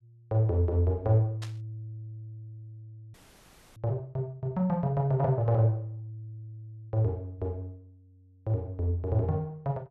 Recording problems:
burst of static; at 1.5 s; peak -10 dB vs average level
frozen audio; at 3 s for 0.5 s

